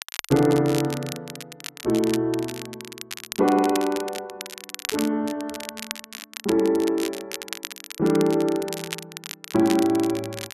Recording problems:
crackling; vinyl, SNR 12 dB

